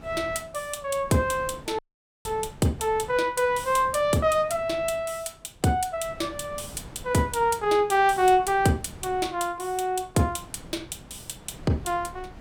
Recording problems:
wind noise; below 450 Hz, SNR 20 dB
audio cutting out; at 2 s

